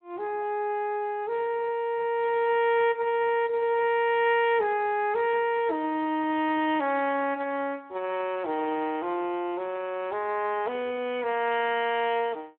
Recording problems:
phone line; 240 Hz to 3.3 kHz, Speex

